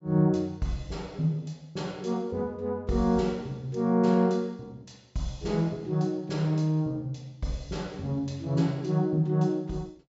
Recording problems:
low-pass filter; nothing above 8 kHz

